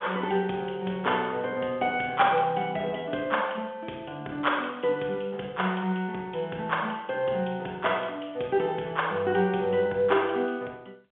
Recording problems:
telephone audio; 300 Hz to 3.4 kHz, G.711

